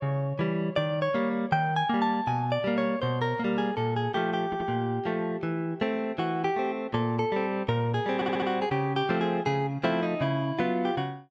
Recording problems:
stutter; at 4.5 s and at 8 s

